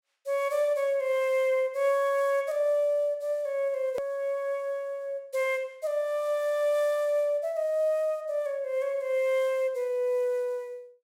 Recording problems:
hard cut with a click; at 4 s

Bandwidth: 16.5 kHz